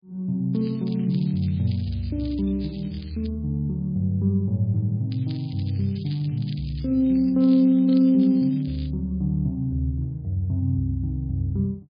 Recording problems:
lossy codec; MP3, log-spectral distance 3 dB, nothing above 11.3 kHz
crackle; from 0.5 to 3.5 s and from 5 to 9 s; loose cable, SNR 23 dB

